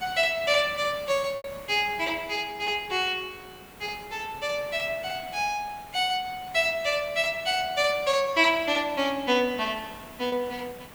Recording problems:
hiss; slope -4 dB per octave, SNR 19 dB
packet loss; 1.1% of the sound replaced, filled with repeated pitch periods

